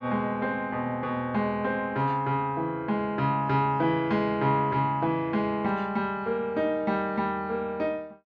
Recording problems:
none

